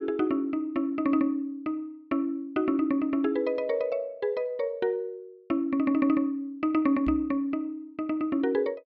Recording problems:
knock on the microphone; at 7 s; peak -3 dB vs average level

